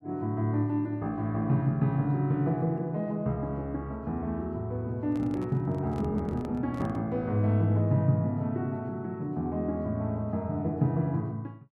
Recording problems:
microphone handling noise; from 5 to 7 s; peak -12 dB vs average level

